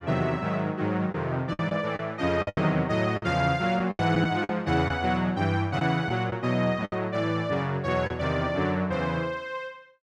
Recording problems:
lost packets; 7% of the sound replaced, filled with the last packet

